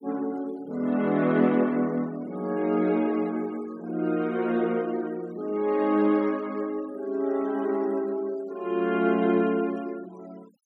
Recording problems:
denoising artefacts; signal-to-artefact ratio 25 dB

